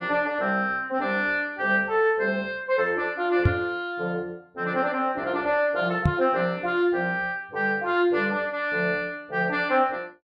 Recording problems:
microphone bump; at 3.5 s and at 6 s; peak +8 dB vs average level

